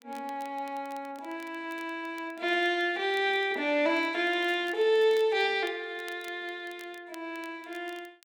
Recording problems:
crackle; vinyl, SNR 26 dB

